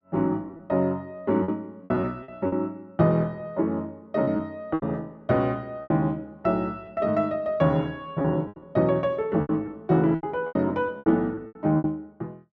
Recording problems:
packet loss; 10% of the sound replaced, filled with repeated pitch periods

